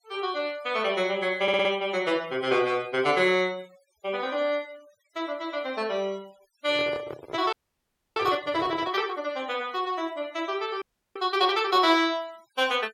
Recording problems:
noise reduction artefacts; signal-to-artefact ratio 24 dB
stutter; at 1.5 s
handling noise; from 6.5 to 9 s; peak -7 dB vs average level
audio freezing; at 7.5 s for 0.5 s and at 11 s

